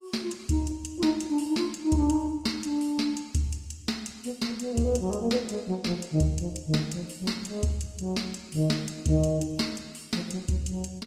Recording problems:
lossy compression; Opus, log-spectral distance 4 dB

